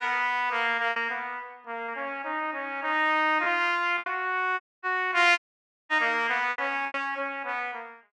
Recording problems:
lost packets; 4% of the sound replaced, filled with repeated pitch periods
audio cutting out; at 4.5 s and at 5.5 s for 0.5 s

